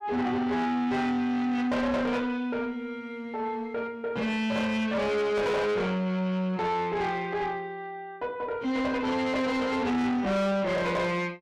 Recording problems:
distortion; soft clipping, signal-to-distortion ratio 7 dB

